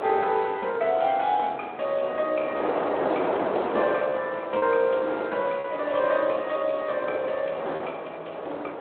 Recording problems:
phone line; 320 Hz to 3.7 kHz, Speex
wind on the microphone; below 910 Hz, SNR 6 dB
lost packets; 2% of the sound replaced, filled with repeated pitch periods

